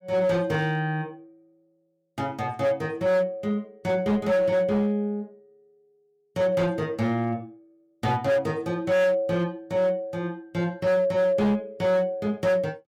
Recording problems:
distorted audio; hard clipping, signal-to-distortion ratio 11 dB

